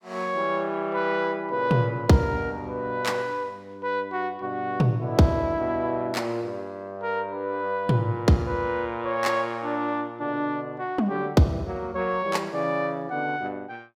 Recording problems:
none

